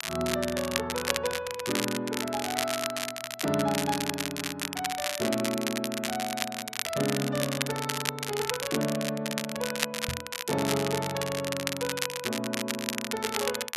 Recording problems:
crackling; vinyl, SNR 1 dB
microphone thump; at 10 s; peak 0 dB vs average level

